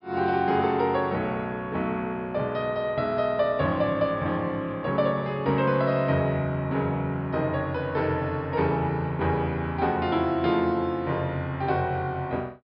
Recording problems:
treble cut off; nothing above 5.5 kHz

